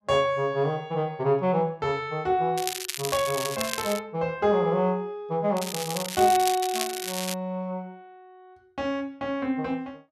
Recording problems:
crackling; from 2.5 to 4 s and from 5.5 to 7.5 s; loose cable, SNR 6 dB

